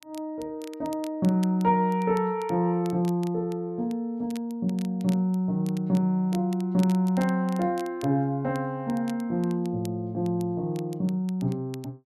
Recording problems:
crackling; vinyl, SNR 23 dB

